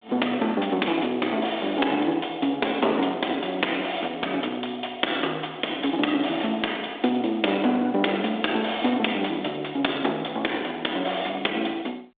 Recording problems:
telephone audio; 240 Hz to 3.6 kHz, G.726
distorted audio; soft clipping, signal-to-distortion ratio 13 dB

